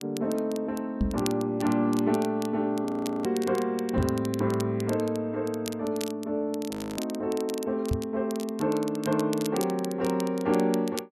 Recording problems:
crackle; vinyl, SNR 15 dB
microphone thump; at 1 s, at 4 s and at 8 s; peak +4 dB vs average level
frozen audio; at 3 s and at 6.5 s

